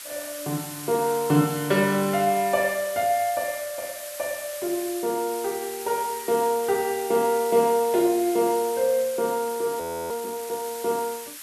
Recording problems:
background hiss; SNR 11 dB
frozen audio; at 10 s

